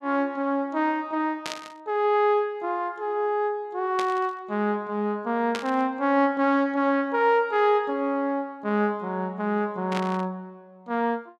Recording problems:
burst of static; 4 times, first at 1.5 s; peak -3 dB vs average level

